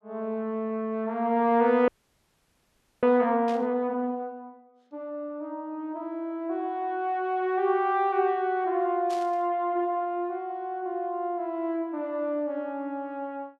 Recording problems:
audio freezing; at 2 s for 1 s
burst of static; at 3.5 s and at 9 s; peak -11 dB vs average level

